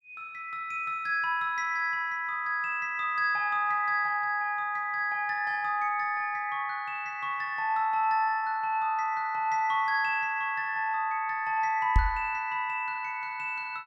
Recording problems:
microphone thump; at 12 s; peak +8 dB vs average level

